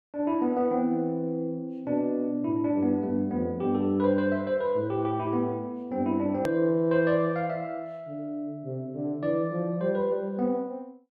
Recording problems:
hard cut with a click; at 6.5 s

